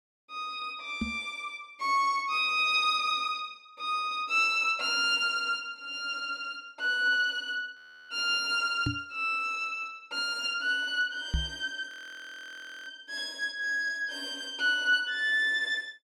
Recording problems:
microphone bump; at 1 s, at 9 s and at 11 s; peak +2 dB vs average level
audio freezing; at 8 s and at 12 s for 1 s

